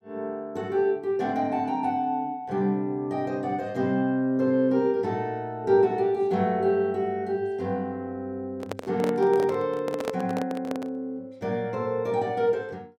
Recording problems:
handling noise; from 8.5 to 11 s; peak +1 dB vs average level

